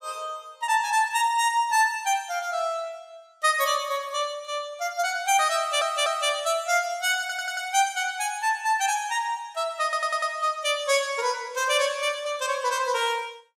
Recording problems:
stutter; at 5.5 s, at 7 s and at 10 s

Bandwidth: 14.5 kHz